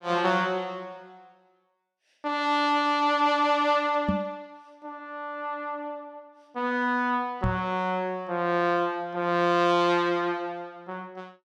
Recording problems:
microphone thump; at 4 s and at 7.5 s; peak +3 dB vs average level

